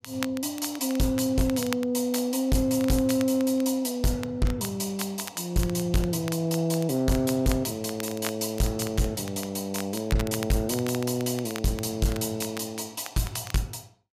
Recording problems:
distortion; soft clipping, signal-to-distortion ratio 10 dB
crackle; vinyl, SNR 14 dB

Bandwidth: 15 kHz